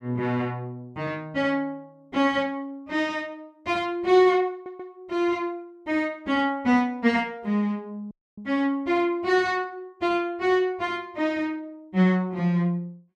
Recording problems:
audio stuttering; at 4.5 s
dropout; at 8 s

